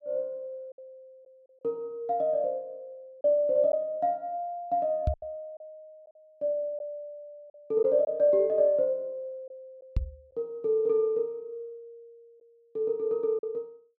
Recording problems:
lost packets; 3% of the sound replaced, filled with silence
microphone thump; at 5 s and at 10 s; peak +4 dB vs average level

